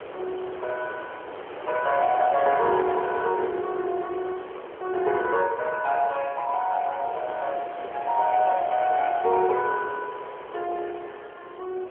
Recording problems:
phone line; 320 Hz to 3 kHz, AMR-NB
wind noise; below 1.1 kHz, SNR 13 dB

